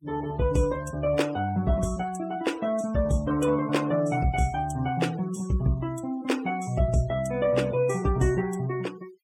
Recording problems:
noise reduction artefacts; signal-to-artefact ratio 20 dB

